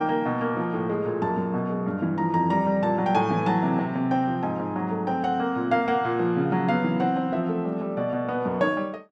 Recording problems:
none

